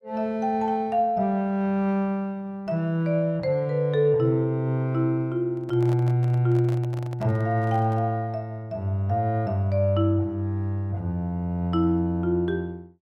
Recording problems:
handling noise; from 5.5 to 8 s; peak -11 dB vs average level

